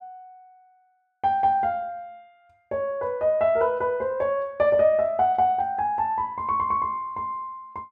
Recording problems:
none

